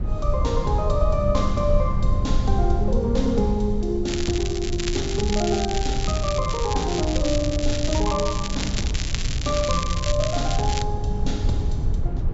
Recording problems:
treble cut off; nothing above 8 kHz
low-frequency rumble; below 86 Hz, SNR 2 dB
crackle; from 4 to 11 s; loose cable, SNR 6 dB

